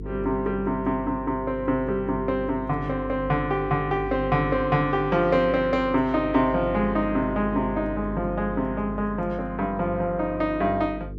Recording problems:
hum; 50 Hz, harmonics up to 450 Hz, SNR 12 dB

